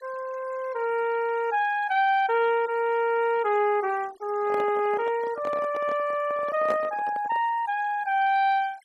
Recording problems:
denoising artefacts; signal-to-artefact ratio 23 dB
microphone handling noise; from 4.5 to 7.5 s; peak -4 dB vs average level

